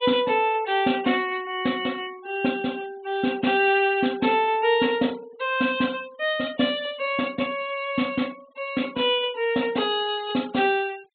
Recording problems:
low-pass filter; nothing above 4 kHz
denoising artefacts; signal-to-artefact ratio 23 dB

